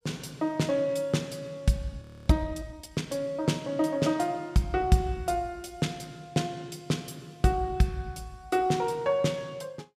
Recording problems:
frozen audio; at 2 s

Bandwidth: 15 kHz